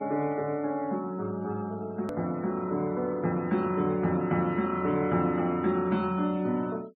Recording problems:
treble cut off; nothing above 5.5 kHz
denoising artefacts; signal-to-artefact ratio 26 dB
edit click; at 2 s

